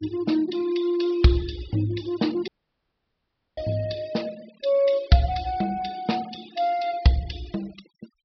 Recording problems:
low-pass filter; nothing above 5.5 kHz
noise reduction artefacts; signal-to-artefact ratio 20 dB
audio cutting out; at 2.5 s for 1 s

